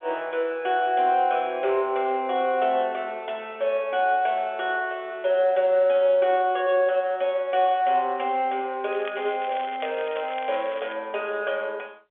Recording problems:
phone line; 280 Hz to 3.5 kHz, G.711
crackle; from 9 to 11 s; loose cable, SNR 18 dB

